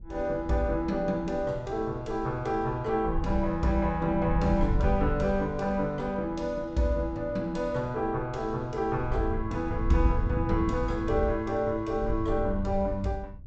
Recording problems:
low-pass filter; nothing above 8 kHz
wind on the microphone; below 82 Hz, SNR 7 dB

